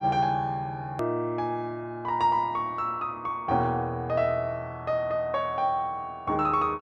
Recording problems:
hard cut with a click; at 1 s

